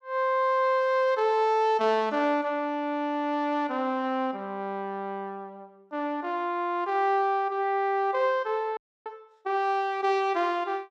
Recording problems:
audio freezing; at 9 s

